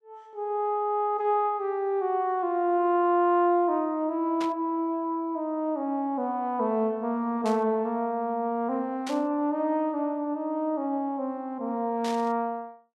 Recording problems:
burst of static; 4 times, first at 4.5 s; peak -7 dB vs average level

